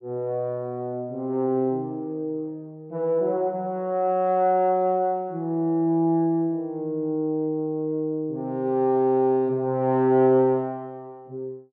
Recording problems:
none

